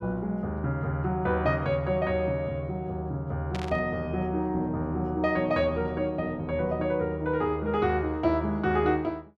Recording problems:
burst of static; at 3.5 s; peak -6 dB vs average level

